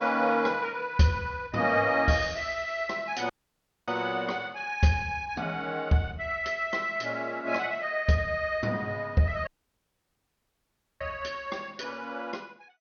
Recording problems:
lossy codec; MP2, log-spectral distance 3 dB, nothing above 6.3 kHz
audio cutting out; at 3.5 s for 0.5 s and at 9.5 s for 1.5 s

